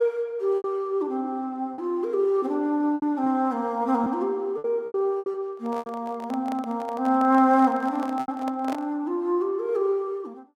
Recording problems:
lost packets; 6% of the sound replaced, filled with repeated pitch periods
microphone handling noise; from 5.5 to 9 s; peak -5 dB vs average level

